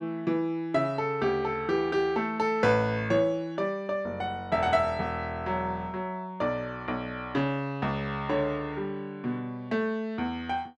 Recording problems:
none

